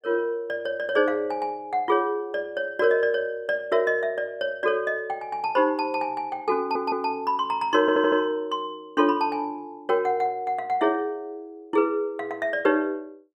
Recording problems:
stutter; at 6.5 s and at 8 s

